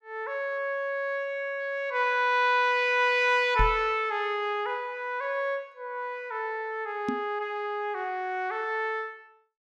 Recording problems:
microphone bump; at 3.5 s and at 7 s; peak +3 dB vs average level

